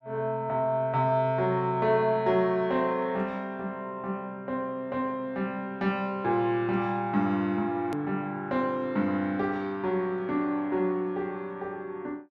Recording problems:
hard cut with a click; at 8 s

